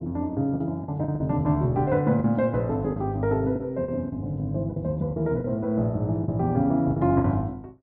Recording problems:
treble cut off; nothing above 5.5 kHz
lost packets; 8% of the sound replaced, filled with the last packet

